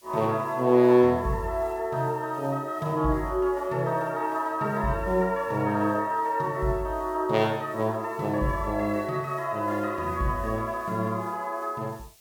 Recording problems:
background hiss; SNR 27 dB

